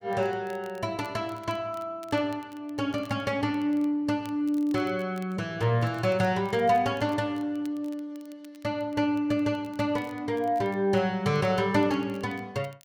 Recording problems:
crackle; vinyl, SNR 29 dB

